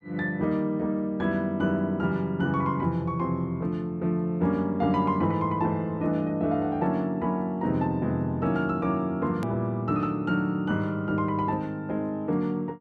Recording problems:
edit click; at 9.5 s

